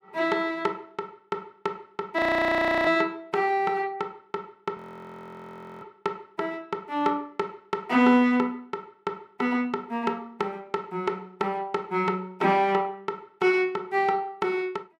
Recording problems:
audio freezing; at 2 s for 0.5 s and at 5 s for 1 s

